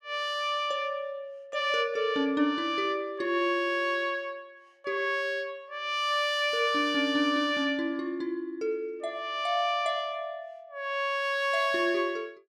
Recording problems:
none

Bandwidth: 16 kHz